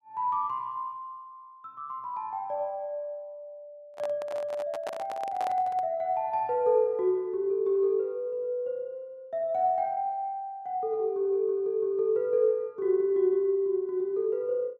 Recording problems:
handling noise; from 4 to 6 s; peak -3 dB vs average level

